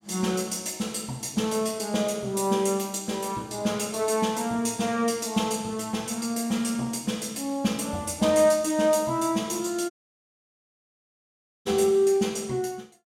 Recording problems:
dropout; at 10 s for 2 s

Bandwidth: 16 kHz